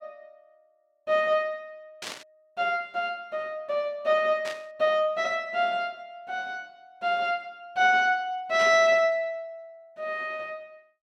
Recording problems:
burst of static; at 2 s, at 4.5 s and at 8.5 s; peak -5 dB vs average level

